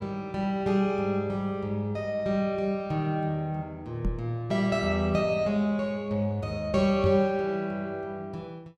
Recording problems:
microphone thump; at 4 s and at 7 s; peak +2 dB vs average level

